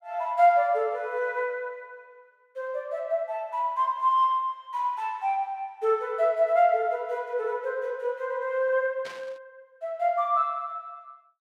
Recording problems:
static burst; at 9 s; peak -11 dB vs average level

